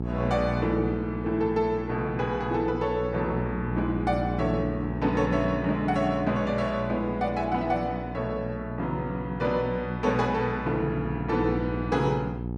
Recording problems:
mains hum; 60 Hz, harmonics up to 900 Hz, SNR 6 dB

